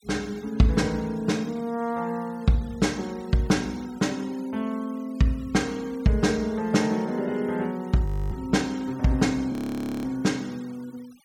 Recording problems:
denoising artefacts; signal-to-artefact ratio 24 dB
frozen audio; at 8 s and at 9.5 s for 0.5 s

